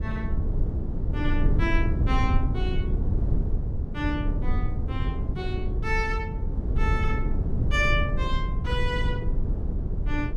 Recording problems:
rumble; below 100 Hz, SNR -3 dB

